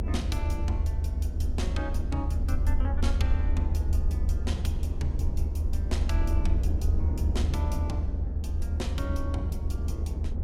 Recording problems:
low-frequency rumble; below 76 Hz, SNR -9 dB
wind noise; below 280 Hz, SNR 1 dB

